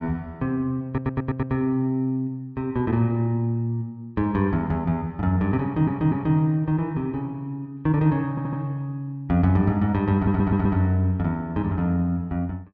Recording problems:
audio stuttering; 4 times, first at 1 s

